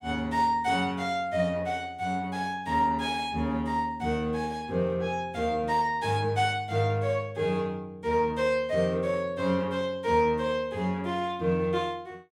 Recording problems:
none

